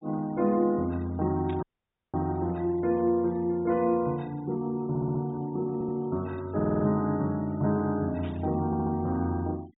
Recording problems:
low-pass filter; nothing above 4 kHz
noise reduction artefacts; signal-to-artefact ratio 27 dB
burst of static; at 1.5 s and at 8 s; peak -15 dB vs average level
audio cutting out; at 1.5 s for 0.5 s
audio stuttering; 4 times, first at 5 s

